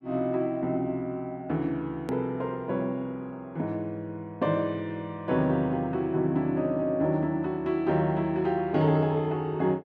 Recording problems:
click at an edit; at 2 s

